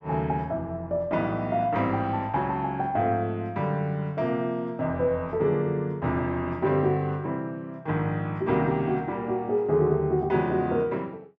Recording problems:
none

